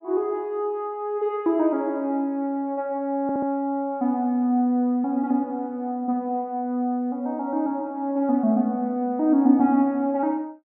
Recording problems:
stutter; at 3 s

